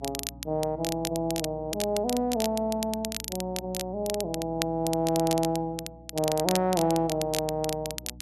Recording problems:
mains hum; 60 Hz, harmonics up to 300 Hz, SNR 18 dB
crackling; vinyl, SNR 7 dB

